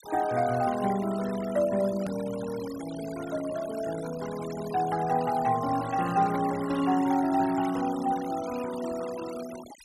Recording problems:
noise reduction artefacts; signal-to-artefact ratio 15 dB
click at an edit; at 2 s

